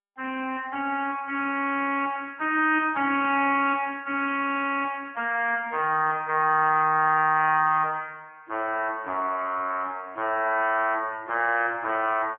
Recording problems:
phone line; 220 Hz to 3.1 kHz, AMR-NB

